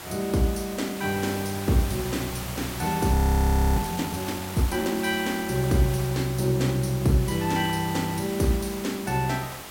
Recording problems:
background hiss; slope -3 dB per octave, SNR 10 dB
frozen audio; at 3 s for 0.5 s

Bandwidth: 16.5 kHz